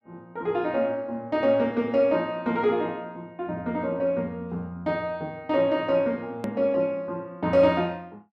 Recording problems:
edit click; at 6.5 s

